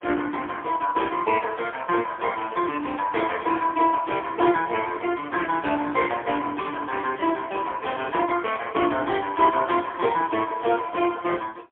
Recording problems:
phone line; 240 Hz to 3.4 kHz, AMR-NB, then MP3

